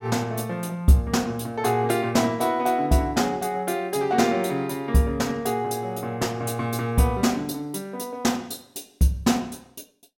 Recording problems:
none

